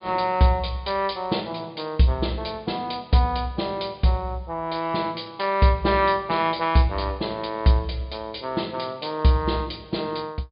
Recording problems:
treble missing; nothing above 5.1 kHz

